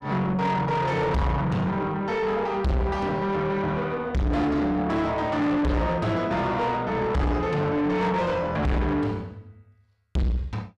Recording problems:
distortion; soft clipping, signal-to-distortion ratio 5 dB

